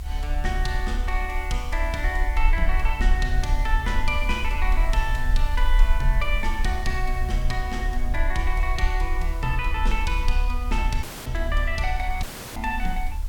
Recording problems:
background hiss; slope -2 dB per octave, SNR 19 dB
rumble; below 40 Hz, SNR -1 dB
audio cutting out; at 11 s and at 12 s

